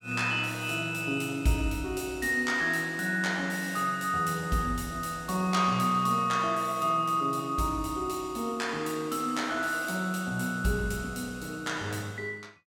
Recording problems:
none

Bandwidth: 17 kHz